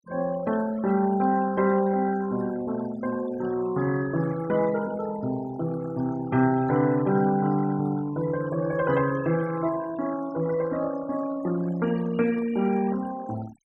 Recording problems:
noise reduction artefacts; signal-to-artefact ratio 17 dB

